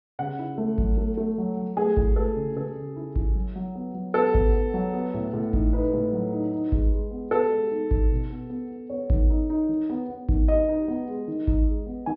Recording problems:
low-pass filter; nothing above 5.3 kHz

